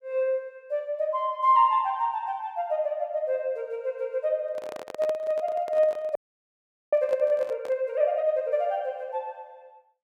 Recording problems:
microphone handling noise; from 4.5 to 8 s; peak -6 dB vs average level
frozen audio; at 6 s for 1 s

